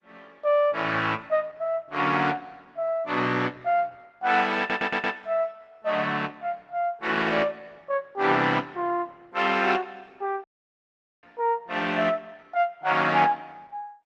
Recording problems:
codec artefacts; Opus, log-spectral distance 3 dB
stutter; at 4.5 s
dropout; at 10 s for 1 s

